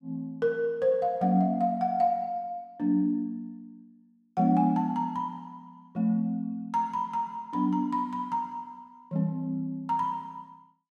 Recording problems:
none

